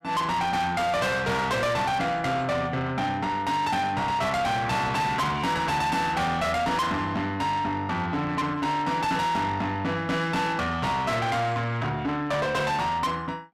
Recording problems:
distorted audio; soft clipping, signal-to-distortion ratio 7 dB

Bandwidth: 15.5 kHz